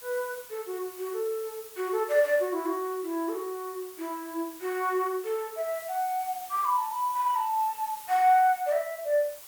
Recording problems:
background hiss; slope +1 dB per octave, SNR 16 dB

